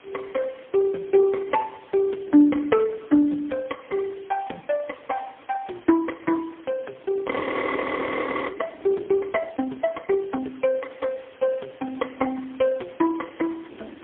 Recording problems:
phone line; 220 Hz to 2.7 kHz, AMR-NB, then MP3
hiss; SNR 27 dB
wind noise; below 420 Hz, SNR 22 dB
audio freezing; at 7.5 s for 1 s

